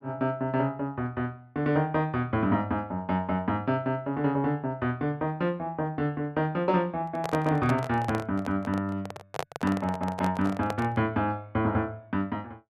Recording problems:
handling noise; from 7 to 11 s; peak +2 dB vs average level

